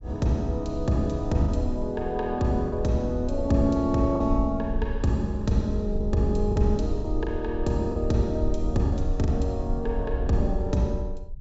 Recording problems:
treble cut off; nothing above 8 kHz
low-frequency rumble; below 64 Hz, SNR 7 dB
lost packets; 4% of the sound replaced, filled with the last packet

